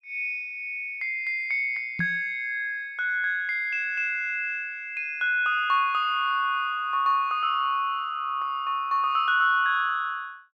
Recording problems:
knock on the microphone; at 2 s; peak -2 dB vs average level

